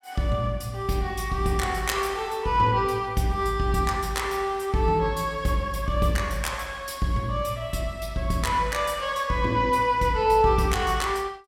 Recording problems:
none

